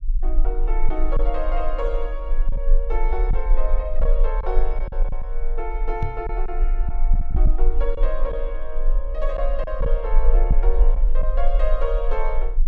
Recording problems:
low-frequency rumble; below 36 Hz, strongest tone 20 Hz, SNR -6 dB
packet loss; 4% of the sound replaced, filled with silence
microphone thump; at 6 s; peak +8 dB vs average level

